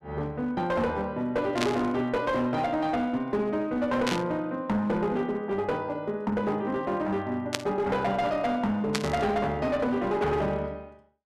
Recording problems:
distorted audio; hard clipping, uneven, signal-to-distortion ratio 10 dB
burst of static; 4 times, first at 1.5 s; peak +5 dB vs average level

